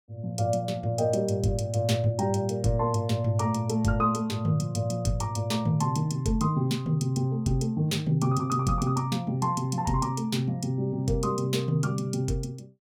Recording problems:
none

